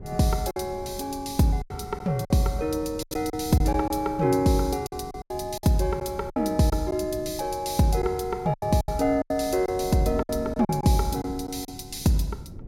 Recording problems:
wind on the microphone; below 210 Hz, SNR 17 dB
lost packets; 9% of the sound replaced, filled with silence

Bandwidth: 16 kHz